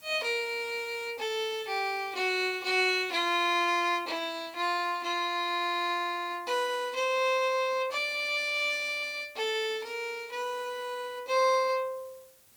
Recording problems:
hiss; slope -1 dB per octave, SNR 27 dB

